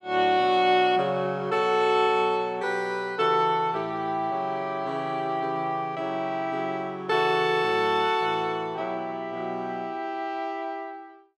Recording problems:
none

